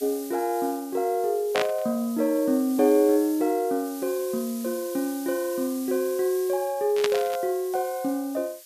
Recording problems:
background hiss; slope +5 dB per octave, SNR 15 dB
static burst; at 1.5 s and at 7 s; peak +2 dB vs average level

